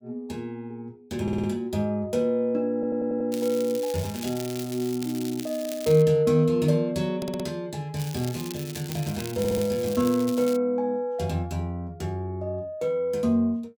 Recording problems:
stutter; 4 times, first at 1 s
crackling; from 3.5 to 6 s and from 8 to 11 s; loose cable, SNR 13 dB

